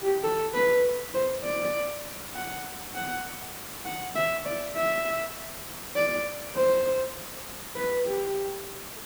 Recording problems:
background hiss; slope -2 dB per octave, SNR 9 dB

